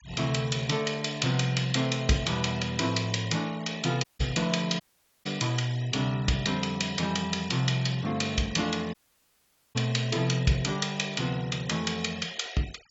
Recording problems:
treble missing; nothing above 8 kHz
noise reduction artefacts; signal-to-artefact ratio 19 dB
audio cutting out; at 4 s, at 5 s and at 9 s for 1 s

